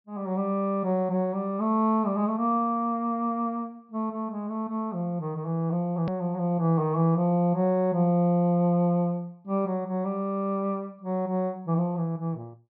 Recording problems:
low-pass filter; nothing above 5.6 kHz
edit click; at 6 s

